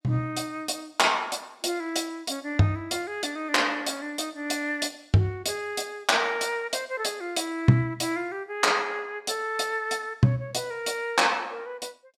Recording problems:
none

